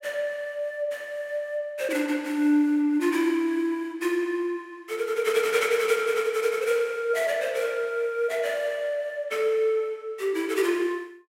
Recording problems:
none

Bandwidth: 16 kHz